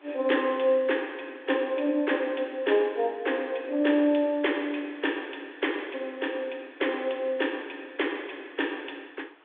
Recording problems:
telephone audio; 260 Hz to 3.6 kHz, G.726
hiss; SNR 29 dB

